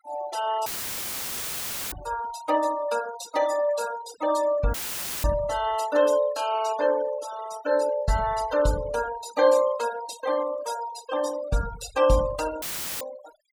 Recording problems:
noise reduction artefacts; signal-to-artefact ratio 15 dB
dropout; at 0.5 s for 1.5 s, at 4.5 s for 0.5 s and at 13 s; filled with static

